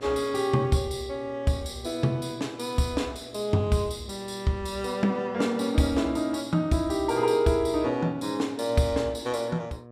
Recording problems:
hum; 60 Hz, harmonics up to 1.3 kHz, SNR 21 dB

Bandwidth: 15.5 kHz